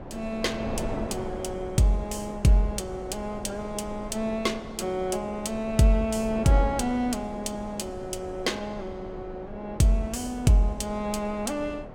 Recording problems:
wind on the microphone; below 590 Hz, SNR 11 dB

